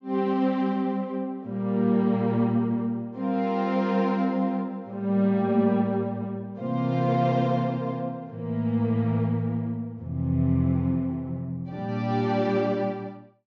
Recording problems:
treble cut off; nothing above 8 kHz

